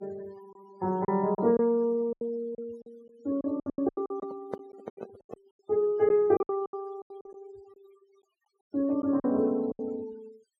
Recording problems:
noise reduction artefacts; signal-to-artefact ratio 24 dB
lost packets; 12% of the sound replaced, filled with silence
handling noise; from 4 to 5.5 s; peak -3 dB vs average level

